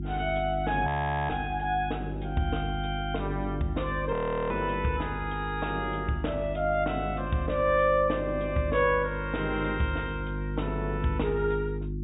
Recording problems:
low-pass filter; nothing above 4 kHz
electrical hum; 50 Hz, harmonics up to 350 Hz, SNR 6 dB
audio freezing; at 1 s and at 4 s

